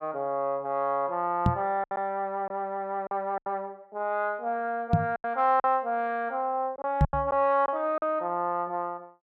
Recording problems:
lost packets; 6% of the sound replaced, filled with silence
microphone thump; at 1.5 s, at 5 s and at 7 s; peak +9 dB vs average level

